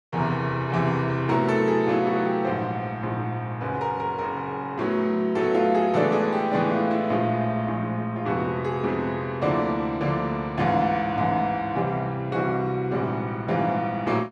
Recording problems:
none

